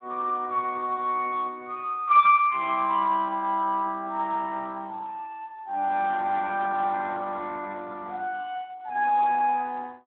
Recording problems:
phone line; 220 Hz to 3.5 kHz, Speex

